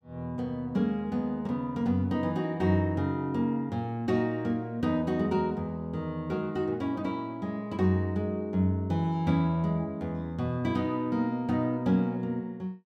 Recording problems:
none

